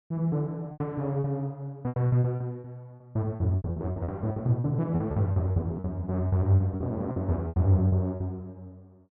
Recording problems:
packet loss; 14% of the sound replaced, filled with repeated pitch periods

